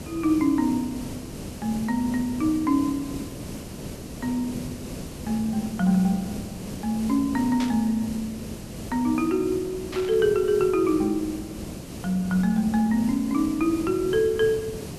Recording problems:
background hiss; SNR 12 dB
static burst; at 7.5 s and at 10 s; peak -6 dB vs average level

